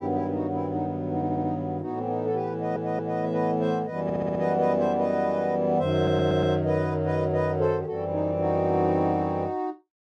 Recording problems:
audio stuttering; 4 times, first at 1 s

